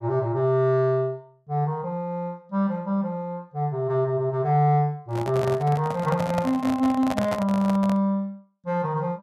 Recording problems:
handling noise; from 5 to 8 s; peak 0 dB vs average level

